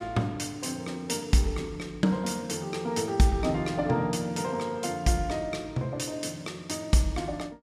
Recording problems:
none

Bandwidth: 14.5 kHz